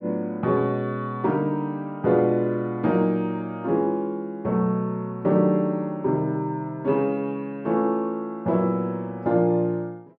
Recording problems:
none

